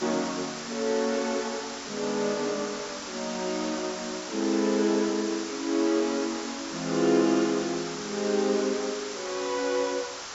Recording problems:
low-pass filter; nothing above 8 kHz
background hiss; SNR 8 dB

